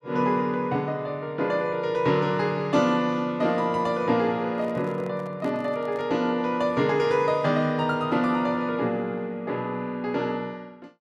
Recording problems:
microphone handling noise; from 4.5 to 6 s; peak -12 dB vs average level

